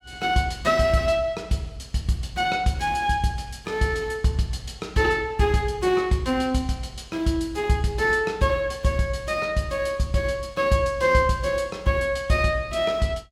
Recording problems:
none

